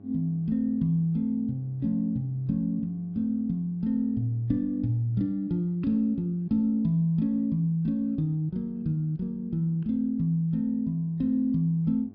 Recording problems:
treble missing; nothing above 5.3 kHz
hum; 50 Hz, harmonics up to 800 Hz, SNR 25 dB

